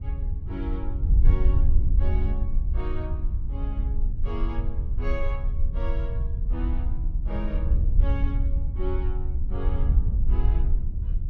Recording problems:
wind on the microphone; below 62 Hz, SNR -11 dB

